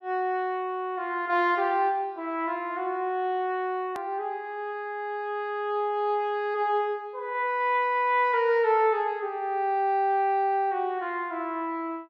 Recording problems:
hard cut with a click; at 4 s

